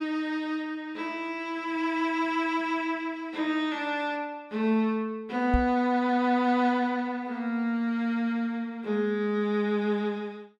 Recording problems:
knock on the microphone; at 5.5 s; peak +5 dB vs average level

